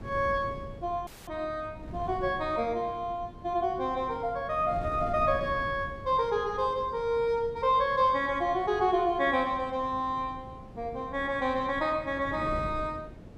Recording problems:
wind on the microphone; below 260 Hz, SNR 15 dB
frozen audio; at 1 s

